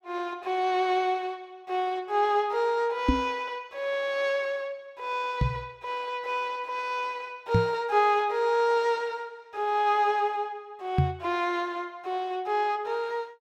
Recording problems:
microphone thump; 4 times, first at 3 s; peak +8 dB vs average level

